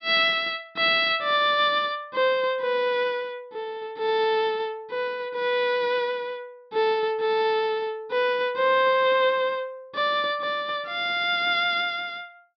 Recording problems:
treble cut off; nothing above 5.5 kHz

